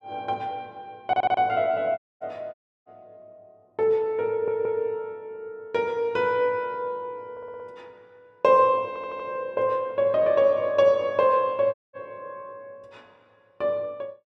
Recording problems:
stutter; 4 times, first at 1 s
dropout; at 2 s, at 2.5 s and at 12 s

